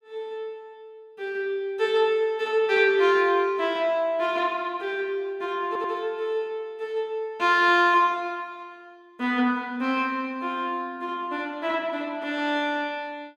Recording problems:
audio stuttering; at 5.5 s

